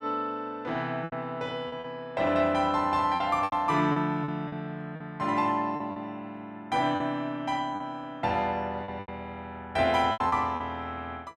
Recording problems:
packet loss; 8% of the sound replaced, filled with repeated pitch periods

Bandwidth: 13.5 kHz